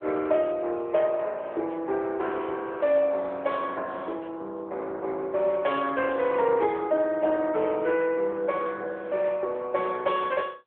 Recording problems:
telephone audio; 320 Hz to 3.6 kHz, AMR-NB

